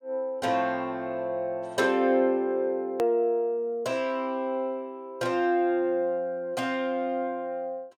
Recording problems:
edit click; at 3 s

